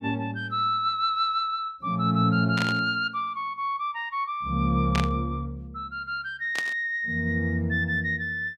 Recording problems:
static burst; at 2.5 s, at 5 s and at 6.5 s; peak 0 dB vs average level

